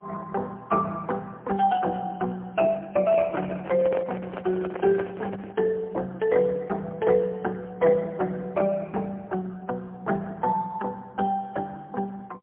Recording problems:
telephone audio; 220 Hz to 2.3 kHz, AMR-NB, then MP3
microphone handling noise; from 3 to 5.5 s; peak -4 dB vs average level

